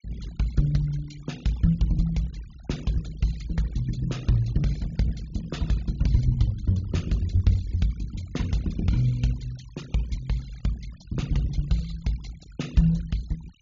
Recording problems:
treble cut off; nothing above 7.1 kHz
noise reduction artefacts; signal-to-artefact ratio 23 dB

